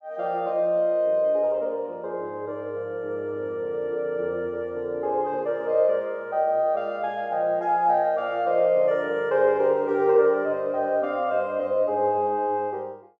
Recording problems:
none

